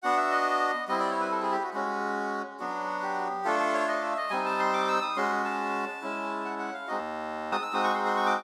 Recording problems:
frozen audio; at 7 s for 0.5 s

